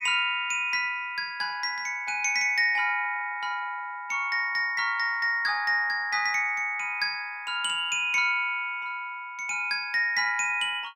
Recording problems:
none

